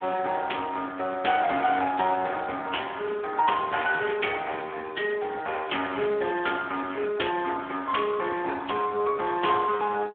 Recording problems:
telephone audio; 300 Hz to 3.4 kHz, Speex

